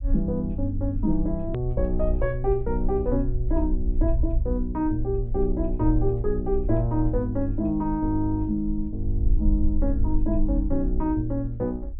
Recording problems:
treble missing; nothing above 4 kHz
low-frequency rumble; below 54 Hz, SNR 4 dB
edit click; at 1.5 s

